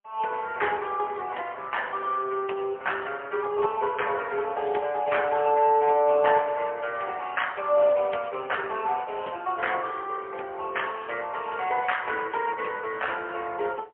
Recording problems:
phone line; 280 Hz to 3.1 kHz, AMR-NB, then MP3

